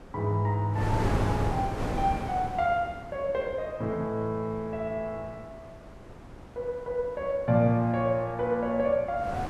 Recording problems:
wind noise; below 630 Hz, SNR 4 dB

